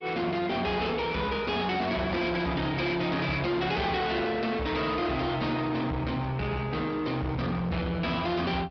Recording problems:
treble cut off; nothing above 5.2 kHz
lossy codec; Opus, log-spectral distance 3 dB
distorted audio; soft clipping, signal-to-distortion ratio 7 dB

